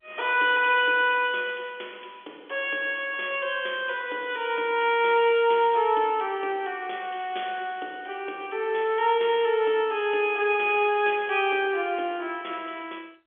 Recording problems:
phone line; 260 Hz to 3.4 kHz, G.711

